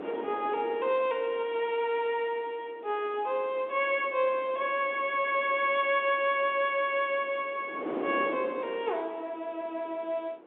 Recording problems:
phone line; 260 Hz to 3.6 kHz, G.711
wind noise; below 640 Hz, SNR 13 dB

